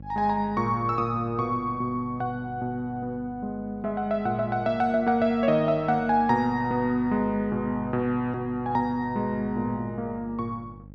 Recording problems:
hum; 50 Hz, harmonics up to 600 Hz, SNR 19 dB

